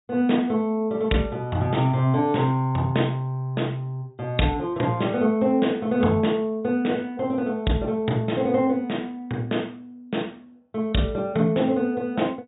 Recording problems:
treble missing; nothing above 4 kHz

